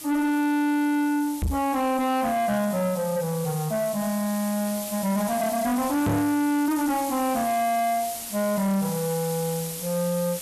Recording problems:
distorted audio; soft clipping, signal-to-distortion ratio 6 dB
background hiss; SNR 10 dB
knock on the microphone; at 1.5 s and at 6 s; peak +5 dB vs average level

